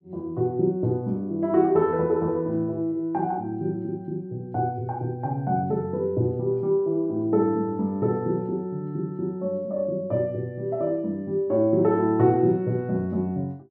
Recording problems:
none

